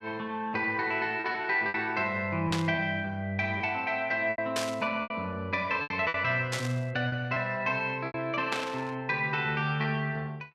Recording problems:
packet loss; 6% of the sound replaced, filled with repeated pitch periods
static burst; 4 times, first at 2.5 s; peak +2 dB vs average level

